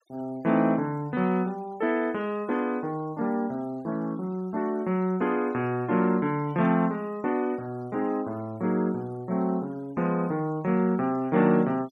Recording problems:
denoising artefacts; signal-to-artefact ratio 27 dB

